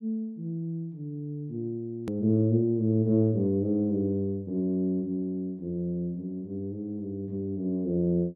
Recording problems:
edit click; at 2 s

